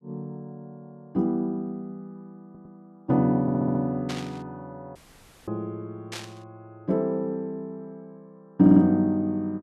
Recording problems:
audio stuttering; at 2.5 s, at 3.5 s and at 8.5 s
static burst; at 4 s and at 6 s; peak -7 dB vs average level
dropout; at 5 s for 0.5 s

